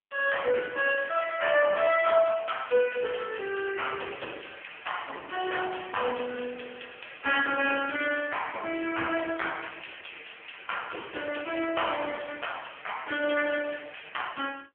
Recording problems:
phone line; 300 Hz to 3.2 kHz, AMR-NB
crackling; from 1 to 3 s; loose cable, SNR 21 dB

